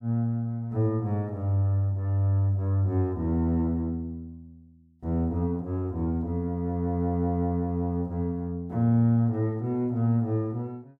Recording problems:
none

